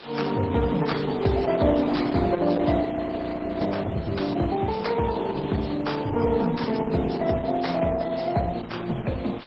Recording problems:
codec artefacts; MP3, then Opus, log-spectral distance 6 dB, nothing above 7.6 kHz
hiss; SNR 18 dB
audio freezing; at 3 s for 1 s

